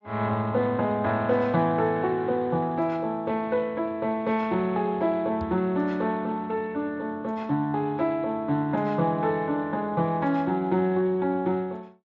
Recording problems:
lossy codec; Speex, log-spectral distance 2 dB
microphone bump; at 5.5 s; peak -7 dB vs average level

